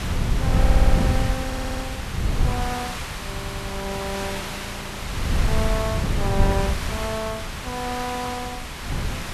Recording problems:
background hiss; SNR 1 dB
wind noise; below 130 Hz, SNR -5 dB
stutter; at 0.5 s, at 1.5 s and at 3.5 s
frozen audio; at 4.5 s for 0.5 s

